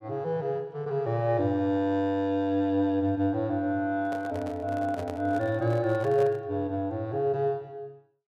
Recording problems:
handling noise; from 4 to 6.5 s; peak -8 dB vs average level

